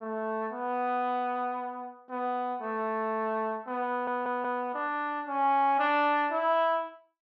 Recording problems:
audio stuttering; at 4 s

